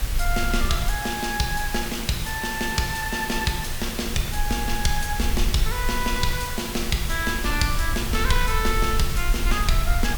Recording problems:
hiss; slope -1 dB per octave, SNR 6 dB
low-frequency rumble; below 52 Hz, SNR 4 dB

